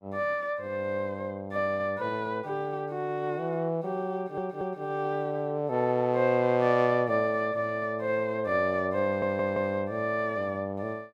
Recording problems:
stutter; at 4 s and at 9 s

